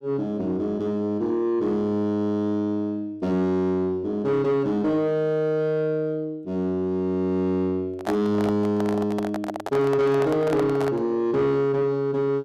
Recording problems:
distortion; soft clipping, signal-to-distortion ratio 11 dB
handling noise; from 8 to 11 s; peak 0 dB vs average level

